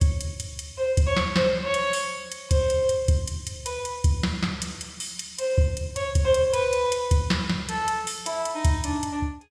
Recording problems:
none

